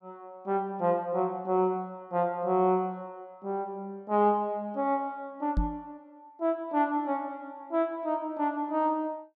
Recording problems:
microphone thump; at 5.5 s; peak +4 dB vs average level

